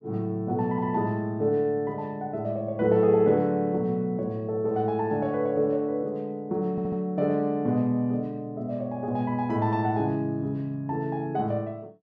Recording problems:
stutter; at 6.5 s

